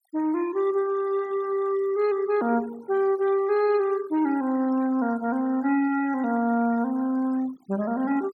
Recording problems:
noise reduction artefacts; signal-to-artefact ratio 23 dB

